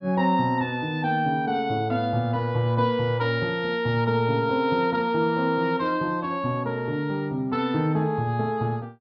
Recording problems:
treble missing; nothing above 5.5 kHz

